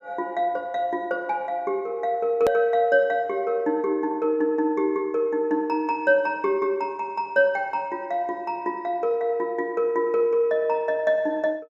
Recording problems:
hard cut with a click; at 2.5 s

